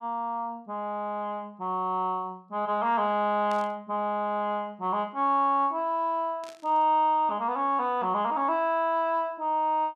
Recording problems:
burst of static; at 3.5 s and at 6.5 s; peak -14 dB vs average level

